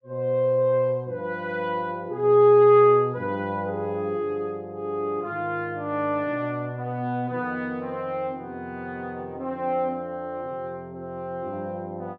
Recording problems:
none

